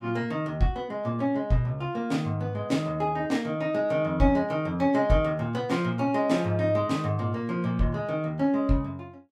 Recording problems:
none

